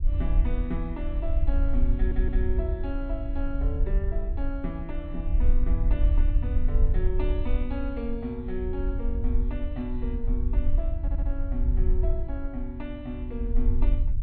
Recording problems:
treble missing; nothing above 4.6 kHz
rumble; below 54 Hz, SNR -6 dB
stutter; at 2 s and at 11 s

